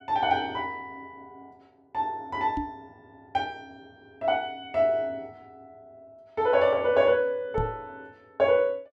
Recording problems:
microphone thump; at 2.5 s and at 7.5 s; peak -2 dB vs average level

